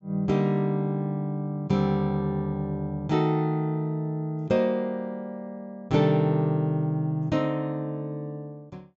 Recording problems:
low-pass filter; nothing above 8 kHz

